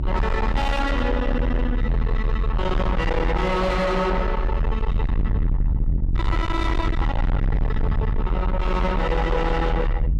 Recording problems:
distorted audio; soft clipping, signal-to-distortion ratio 5 dB
low-frequency rumble; below 100 Hz, strongest tone 34 Hz, SNR 0 dB

